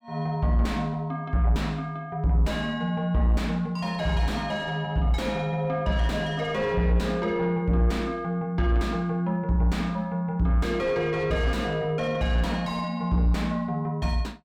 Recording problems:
distorted audio; soft clipping, signal-to-distortion ratio 10 dB

